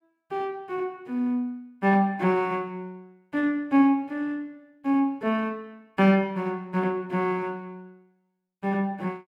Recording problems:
none

